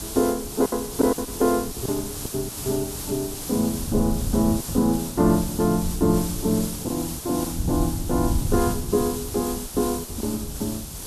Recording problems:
background hiss; SNR 8 dB
wind on the microphone; below 130 Hz, SNR 9 dB
packet loss; 6% of the sound replaced, filled with silence

